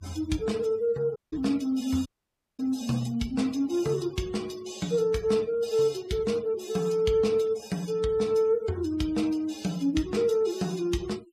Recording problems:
noise reduction artefacts; signal-to-artefact ratio 22 dB
dropout; at 1 s and at 2 s for 0.5 s

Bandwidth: 15 kHz